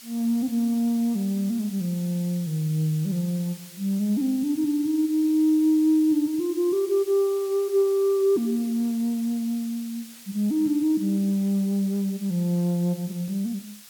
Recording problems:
hiss; slope +3 dB per octave, SNR 19 dB

